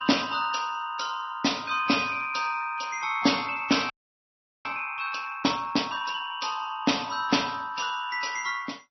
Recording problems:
lossy compression; MP2, then MP3, log-spectral distance 6 dB, nothing above 5.8 kHz
audio freezing; at 4 s for 1 s

